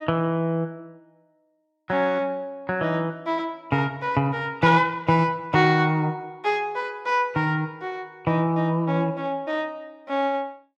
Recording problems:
none

